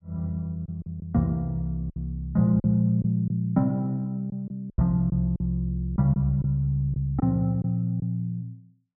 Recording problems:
packet loss; 6% of the sound replaced, filled with silence

